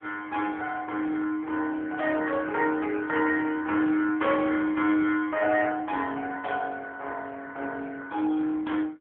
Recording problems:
telephone audio; 220 Hz to 3.3 kHz, AMR-NB

